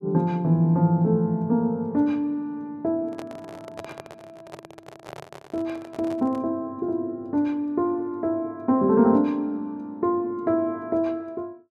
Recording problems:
microphone handling noise; from 3 to 6.5 s; peak -9 dB vs average level

